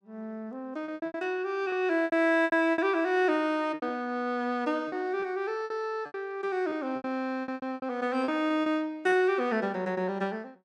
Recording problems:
lost packets; 11% of the sound replaced, filled with repeated pitch periods

